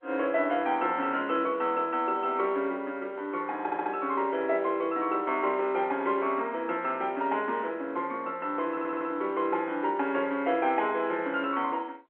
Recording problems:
telephone audio; 240 Hz to 3.3 kHz, G.711
stutter; at 3.5 s and at 8.5 s

